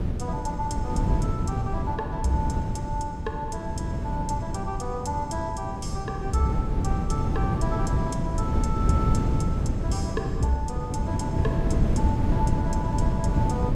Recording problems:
wind on the microphone; below 190 Hz, SNR -4 dB

